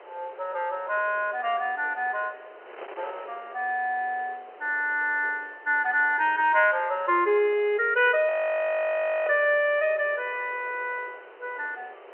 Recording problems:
telephone audio; 370 Hz to 3.4 kHz, G.711
wind on the microphone; below 1.4 kHz, SNR 21 dB
frozen audio; at 8.5 s for 1 s

